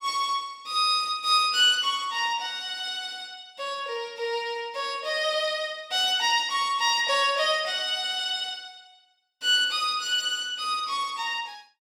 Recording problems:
none

